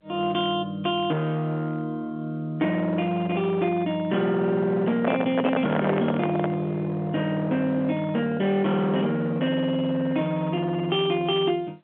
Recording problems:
telephone audio; 220 Hz to 3.4 kHz, G.711
distortion; hard clipping, signal-to-distortion ratio 13 dB
handling noise; from 5 to 6.5 s; peak +3 dB vs average level

